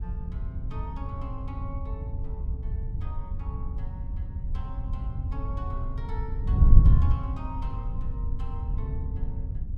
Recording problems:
wind on the microphone; below 86 Hz, SNR -14 dB

